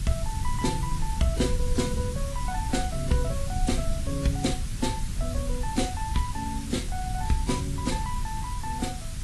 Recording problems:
codec artefacts; AAC, log-spectral distance 6 dB
background hiss; slope +2 dB per octave, SNR 9 dB
low-frequency rumble; below 86 Hz, SNR 2 dB

